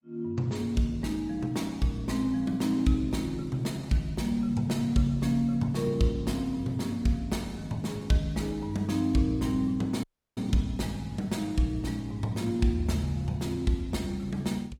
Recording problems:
codec artefacts; Opus, log-spectral distance 3 dB, nothing above 19 kHz
audio cutting out; at 10 s

